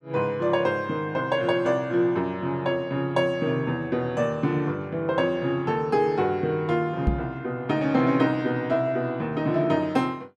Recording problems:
microphone bump; at 7 s; peak +5 dB vs average level

